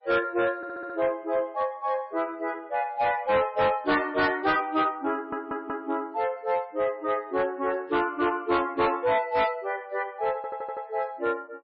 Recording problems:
lossy codec; MP3, log-spectral distance 2 dB, nothing above 4.9 kHz
distortion; hard clipping, uneven, signal-to-distortion ratio 12 dB
stutter; at 0.5 s, at 5 s and at 10 s

